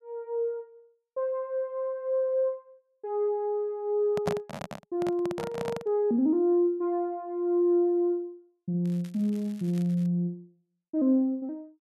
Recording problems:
handling noise; from 4 to 6 s; peak +2 dB vs average level
crackling; from 9 to 10 s; loose cable, SNR 27 dB

